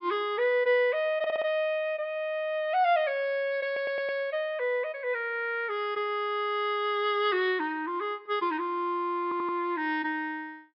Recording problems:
treble cut off; nothing above 5.3 kHz
stutter; at 1 s, at 3.5 s and at 9 s

